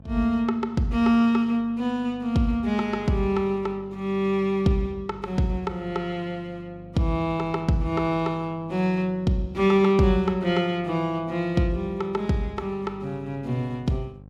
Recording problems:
electrical hum; 50 Hz, harmonics up to 850 Hz, SNR 22 dB

